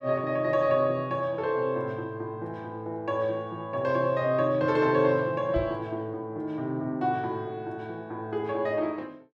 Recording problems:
knock on the microphone; at 5.5 s; peak -2 dB vs average level

